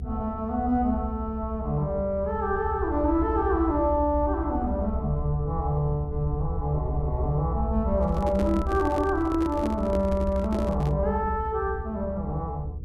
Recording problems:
electrical hum; 60 Hz, harmonics up to 480 Hz, SNR 20 dB
rumble; below 76 Hz, strongest tone 62 Hz, SNR 6 dB
handling noise; from 8 to 11 s; peak -3 dB vs average level

